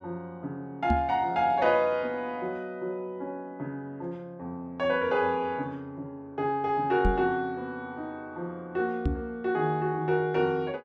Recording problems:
microphone bump; at 1 s, at 7 s and at 9 s; peak +5 dB vs average level

